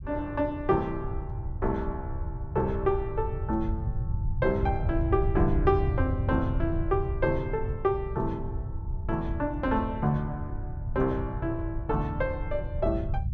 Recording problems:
low-frequency rumble; below 110 Hz, SNR 4 dB

